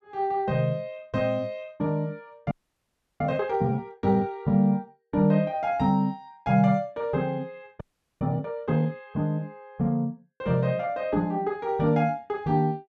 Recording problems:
frozen audio; at 2.5 s for 0.5 s and at 8 s

